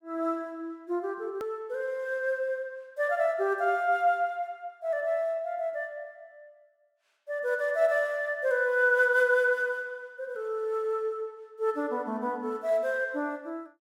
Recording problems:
click at an edit; at 1.5 s

